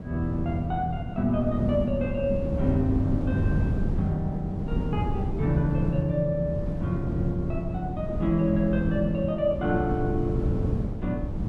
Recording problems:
wind on the microphone; below 210 Hz, SNR 3 dB

